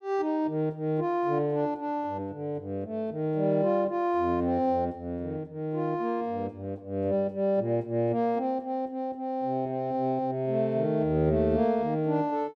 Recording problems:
none

